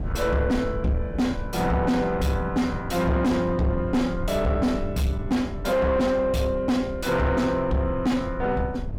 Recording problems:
distorted audio; soft clipping, signal-to-distortion ratio 7 dB
rumble; below 130 Hz, SNR 11 dB

